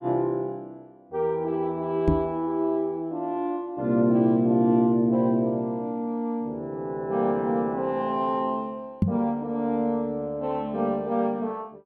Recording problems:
microphone bump; at 2 s and at 9 s; peak +7 dB vs average level

